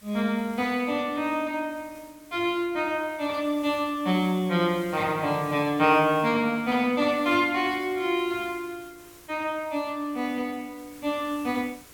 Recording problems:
hiss; slope -2 dB per octave, SNR 23 dB

